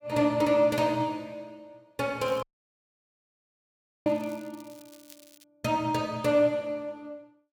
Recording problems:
crackle; from 2 to 5.5 s; loose cable, SNR 26 dB
audio cutting out; at 2.5 s for 1.5 s

